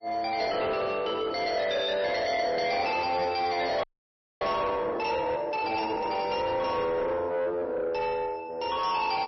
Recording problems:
lossy compression; MP3, log-spectral distance 3 dB, nothing above 4.8 kHz
distortion; soft clipping, signal-to-distortion ratio 10 dB
audio freezing; at 4 s for 0.5 s

